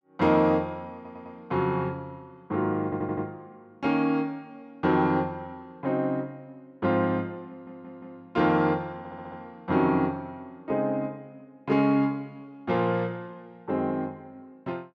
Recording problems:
audio stuttering; 4 times, first at 1 s

